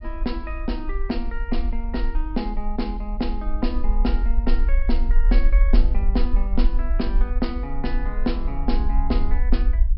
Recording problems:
low-pass filter; nothing above 5.4 kHz
rumble; below 42 Hz, strongest tone 24 Hz, SNR -4 dB

